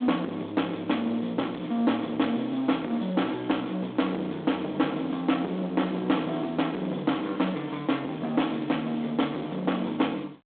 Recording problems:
phone line; 220 Hz to 3.6 kHz, G.726
distortion; soft clipping, signal-to-distortion ratio 12 dB

